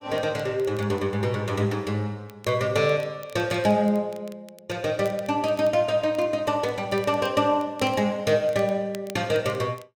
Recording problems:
crackling; vinyl, SNR 26 dB

